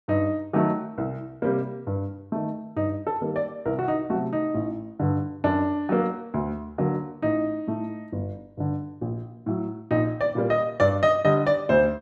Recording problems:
none

